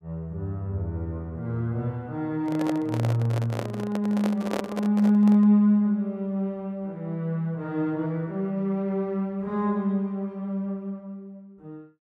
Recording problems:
microphone handling noise; from 2.5 to 5.5 s; peak 0 dB vs average level

